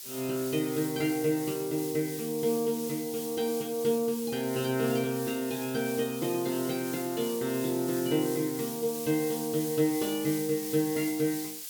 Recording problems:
background hiss; slope +4 dB per octave, SNR 9 dB

